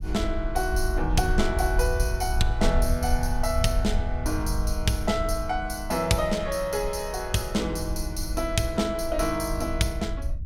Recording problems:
rumble; below 66 Hz, SNR 4 dB

